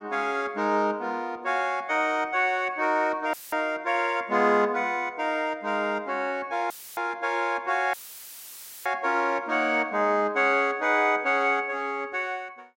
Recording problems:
dropout; at 3.5 s, at 6.5 s and at 8 s for 1 s; filled with static

